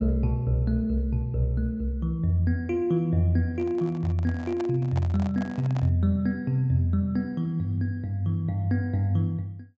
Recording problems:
treble missing; nothing above 8 kHz
handling noise; from 3.5 to 6 s; peak -7 dB vs average level

